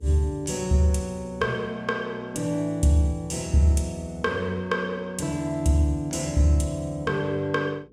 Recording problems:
electrical hum; 60 Hz, harmonics up to 480 Hz, SNR 29 dB

